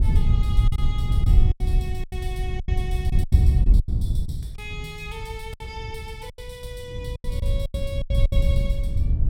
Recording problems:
wind on the microphone; below 86 Hz, SNR -13 dB
lost packets; 11% of the sound replaced, filled with silence

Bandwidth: 16.5 kHz